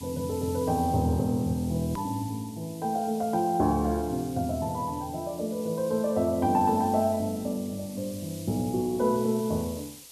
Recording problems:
background hiss; SNR 17 dB
hard cut with a click; at 2 s

